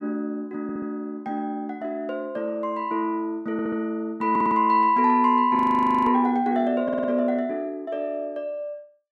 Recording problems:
stutter; 4 times, first at 0.5 s
frozen audio; at 5.5 s for 0.5 s

